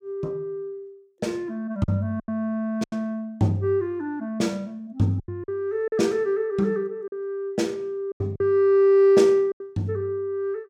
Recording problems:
packet loss; 6% of the sound replaced, filled with silence

